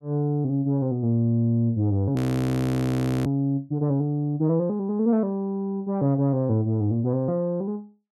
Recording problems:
audio freezing; at 2 s for 1 s

